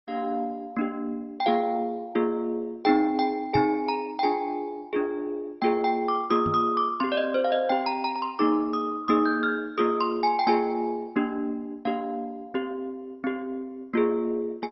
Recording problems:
lossy compression; MP2, log-spectral distance 3 dB, nothing above 5 kHz
knock on the microphone; at 3.5 s and at 6.5 s; peak 0 dB vs average level

